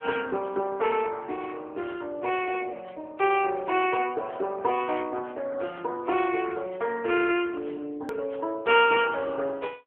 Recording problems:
telephone audio; 280 Hz to 3.2 kHz, AMR-NB
edit click; at 8 s

